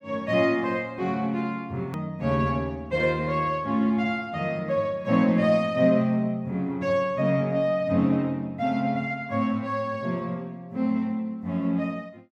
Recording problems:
click at an edit; at 2 s

